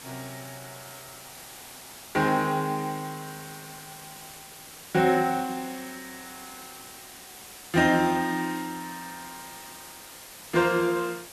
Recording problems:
background hiss; slope -1 dB per octave, SNR 16 dB

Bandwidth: 13.5 kHz